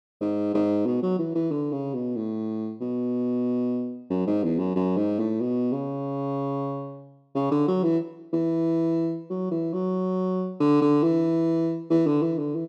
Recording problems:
none

